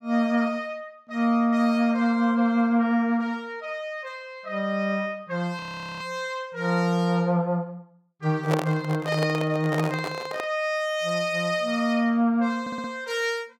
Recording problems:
frozen audio; at 5.5 s
handling noise; from 8.5 to 10 s; peak +3 dB vs average level
audio stuttering; at 13 s

